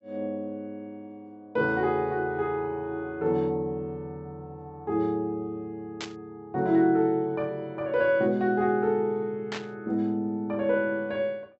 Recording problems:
treble cut off; nothing above 7.9 kHz
static burst; at 6 s and at 9.5 s; peak -4 dB vs average level

